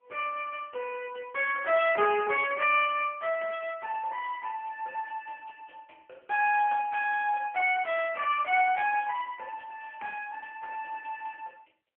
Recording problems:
phone line; 320 Hz to 3.2 kHz, AMR-NB

